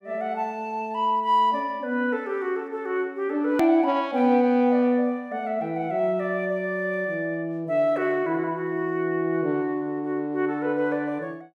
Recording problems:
edit click; at 3.5 s

